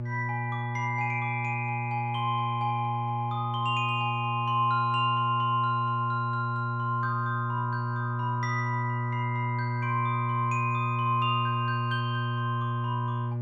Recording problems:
hum; 60 Hz, harmonics up to 840 Hz, SNR 3 dB

